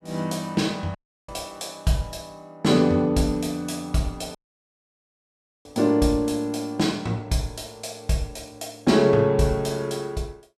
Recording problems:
dropout; at 1 s and at 4.5 s for 1.5 s

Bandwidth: 14.5 kHz